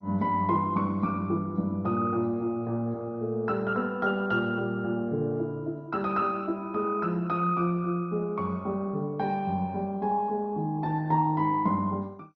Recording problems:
codec artefacts; MP2, log-spectral distance 2 dB, nothing above 5.3 kHz

